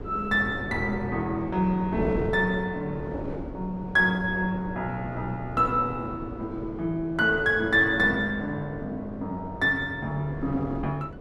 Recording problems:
wind on the microphone; below 440 Hz, SNR 11 dB

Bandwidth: 12.5 kHz